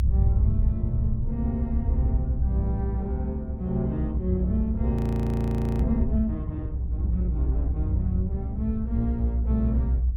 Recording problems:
rumble; below 74 Hz, strongest tone 60 Hz, SNR -2 dB
frozen audio; at 5 s for 1 s

